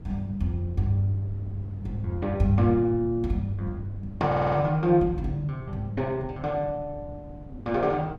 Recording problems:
wind noise; below 160 Hz, SNR 16 dB
audio stuttering; at 4.5 s

